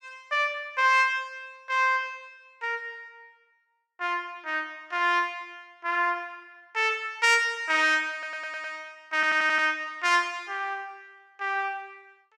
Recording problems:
stutter; at 8 s and at 9 s

